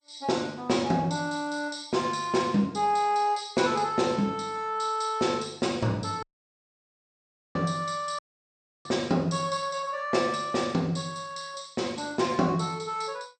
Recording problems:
codec artefacts; MP2, log-spectral distance 5 dB, nothing above 8.5 kHz
dropout; at 6 s for 1.5 s and at 8 s for 0.5 s

